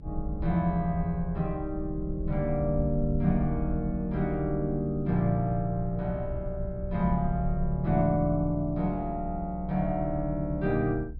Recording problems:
low-pass filter; nothing above 5.5 kHz
rumble; below 62 Hz, strongest tone 24 Hz, SNR 9 dB

